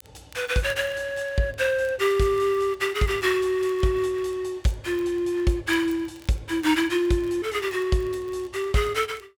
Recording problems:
crackle; vinyl, SNR 29 dB

